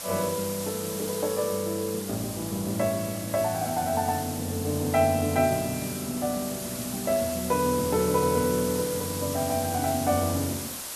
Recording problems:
hiss; slope -1 dB per octave, SNR 7 dB

